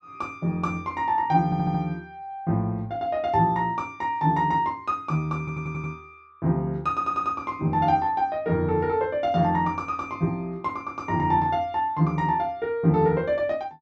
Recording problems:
audio stuttering; at 1.5 s, at 5.5 s and at 7 s

